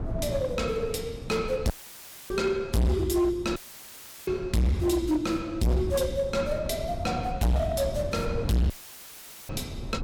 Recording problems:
distortion; hard clipping, signal-to-distortion ratio 6 dB
wind noise; below 210 Hz, SNR 11 dB
audio cutting out; at 1.5 s for 0.5 s, at 3.5 s for 0.5 s and at 8.5 s for 1 s; filled with static

